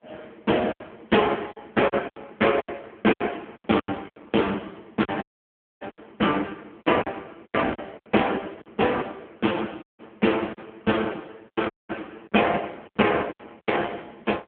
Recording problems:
telephone audio; 190 Hz to 3.3 kHz, AMR-NB
packet loss; 11% of the sound replaced, filled with silence
dropout; at 5 s for 0.5 s, at 10 s and at 12 s

